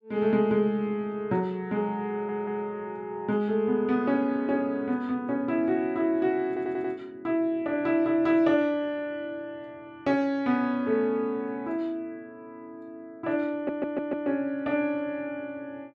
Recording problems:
audio stuttering; at 2 s, at 6.5 s and at 14 s

